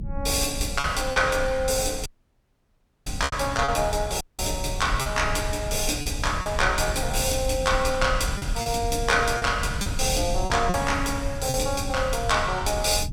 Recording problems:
low-frequency rumble; below 110 Hz, SNR 8 dB
lost packets; 5% of the sound replaced, filled with repeated pitch periods
dropout; at 2 s for 1 s and at 4 s

